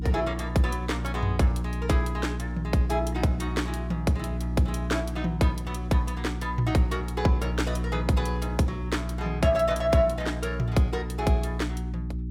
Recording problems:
electrical hum; 60 Hz, harmonics up to 360 Hz, SNR 4 dB

